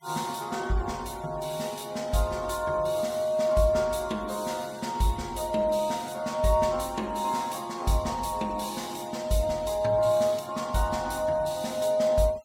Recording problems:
noise reduction artefacts; signal-to-artefact ratio 22 dB

